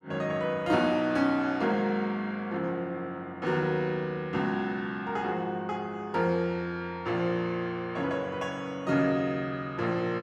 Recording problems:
none

